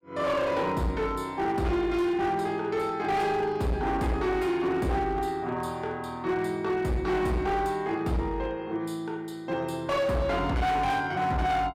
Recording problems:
distortion; hard clipping, signal-to-distortion ratio 10 dB

